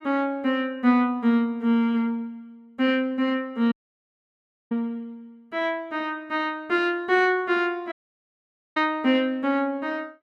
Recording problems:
dropout; at 3.5 s for 1 s and at 8 s for 1 s

